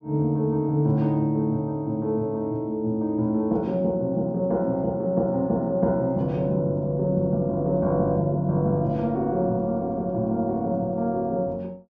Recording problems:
treble missing; nothing above 8 kHz

